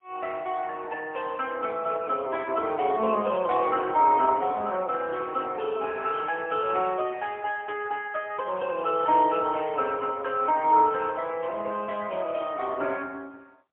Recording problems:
phone line; 240 Hz to 3.3 kHz, AMR-NB, then MP3

